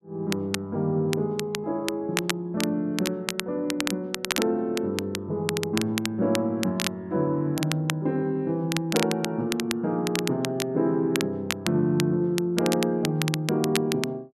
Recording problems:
crackle; vinyl, SNR 6 dB

